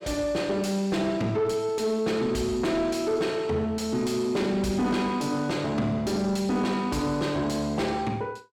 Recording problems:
distorted audio; soft clipping, signal-to-distortion ratio 12 dB

